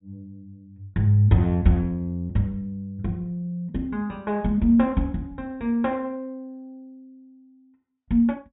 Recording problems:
treble missing; nothing above 4 kHz

